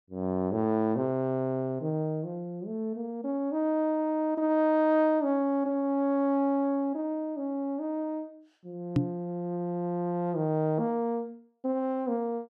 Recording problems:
microphone thump; at 9 s; peak +7 dB vs average level

